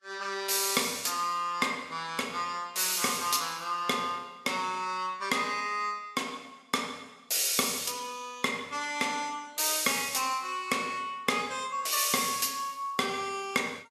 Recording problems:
lossy codec; Vorbis, log-spectral distance 5 dB, nothing above 13.1 kHz

